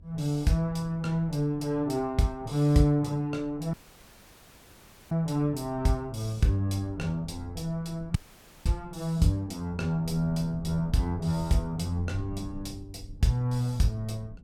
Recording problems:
rumble; below 140 Hz, SNR 18 dB
audio cutting out; at 3.5 s for 1.5 s and at 8 s for 0.5 s

